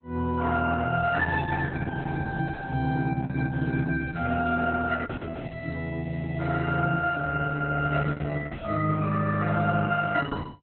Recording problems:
lossy compression; Opus, log-spectral distance 4 dB, nothing above 4 kHz

